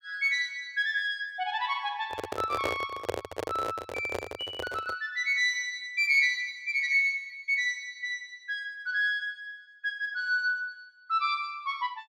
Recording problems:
microphone handling noise; from 2 to 5 s; peak +3 dB vs average level

